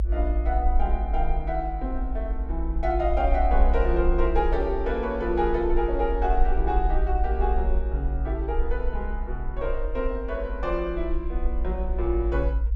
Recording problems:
low-frequency rumble; below 56 Hz, SNR 0 dB

